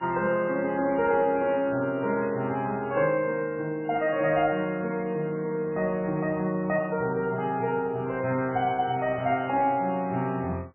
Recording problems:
lossy compression; MP3, log-spectral distance 2 dB, nothing above 2.5 kHz

